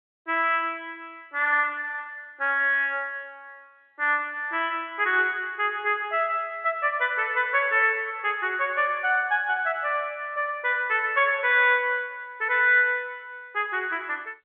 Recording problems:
phone line; 300 Hz to 3.5 kHz, G.711

